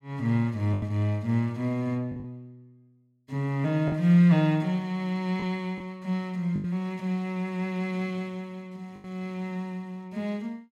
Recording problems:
packet loss; 4% of the sound replaced, filled with the last packet

